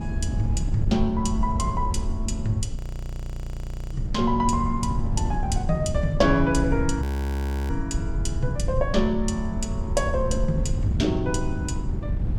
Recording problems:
low-frequency rumble; below 94 Hz, SNR 10 dB
wind on the microphone; below 110 Hz, SNR 3 dB
audio freezing; at 3 s for 1 s and at 7 s for 0.5 s

